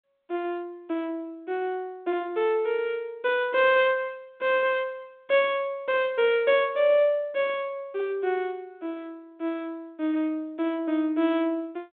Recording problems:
phone line; 220 Hz to 3.6 kHz, G.726

